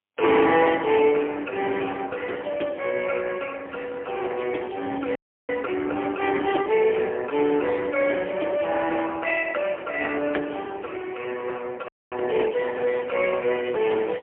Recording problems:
phone line; 260 Hz to 3.3 kHz, AMR-NB, then MP3
audio freezing; at 5 s and at 12 s

